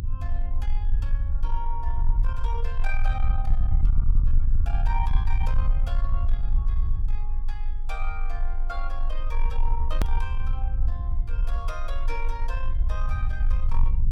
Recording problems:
distortion; soft clipping, signal-to-distortion ratio 12 dB
low-frequency rumble; below 46 Hz, strongest tone 20 Hz, SNR -10 dB
hard cut with a click; at 10 s

